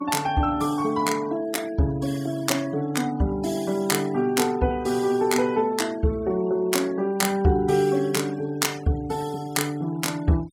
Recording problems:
denoising artefacts; signal-to-artefact ratio 22 dB

